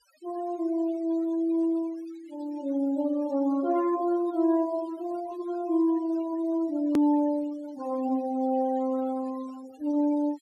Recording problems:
denoising artefacts; signal-to-artefact ratio 23 dB
hard cut with a click; at 7 s

